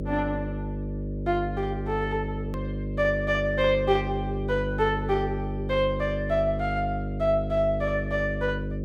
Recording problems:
mains hum; 50 Hz, harmonics up to 600 Hz, SNR 5 dB
click at an edit; at 2.5 s

